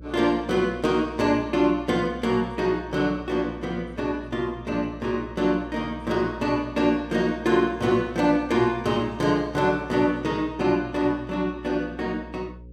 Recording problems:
electrical hum; 60 Hz, harmonics up to 540 Hz, SNR 19 dB

